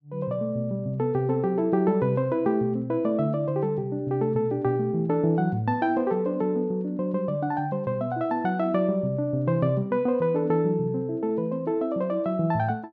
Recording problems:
none

